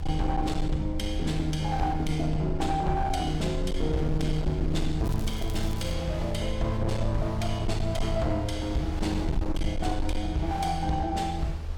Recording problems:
distortion; hard clipping, signal-to-distortion ratio 11 dB
low-frequency rumble; below 76 Hz, SNR 5 dB
wind on the microphone; below 1.6 kHz, SNR 16 dB
crackle; at 5 s; loose cable, SNR 18 dB

